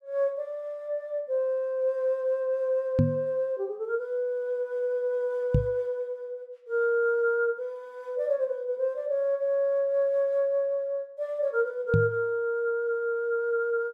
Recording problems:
microphone thump; at 3 s, at 5.5 s and at 12 s; peak +8 dB vs average level

